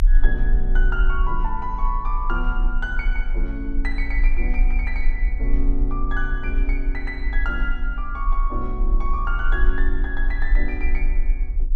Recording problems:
rumble; below 38 Hz, strongest tone 28 Hz, SNR -4 dB

